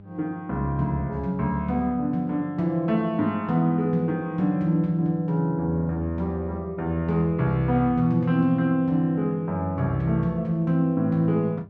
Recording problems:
hum; 50 Hz, harmonics up to 800 Hz, SNR 24 dB

